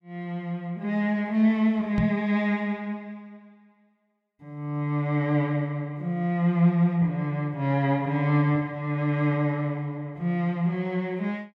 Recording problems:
knock on the microphone; at 2 s; peak +3 dB vs average level

